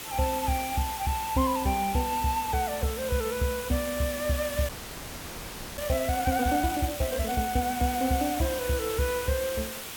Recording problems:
background hiss; slope -1 dB per octave, SNR 7 dB
audio freezing; at 4.5 s for 1 s

